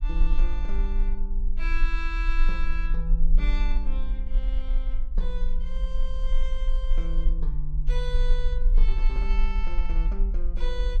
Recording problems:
rumble; below 36 Hz, strongest tone 24 Hz, SNR -10 dB

